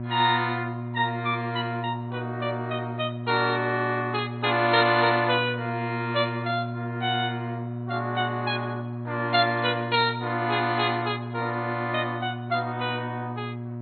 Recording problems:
lossy codec; MP2, log-spectral distance 3 dB, nothing above 3.9 kHz
hum; 60 Hz, harmonics up to 960 Hz, SNR 7 dB

